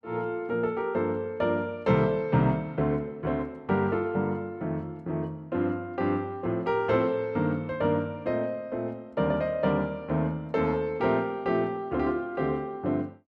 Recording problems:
none

